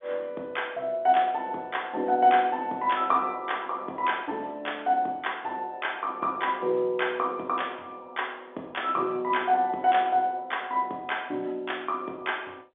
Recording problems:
phone line; 260 Hz to 3.6 kHz, G.711

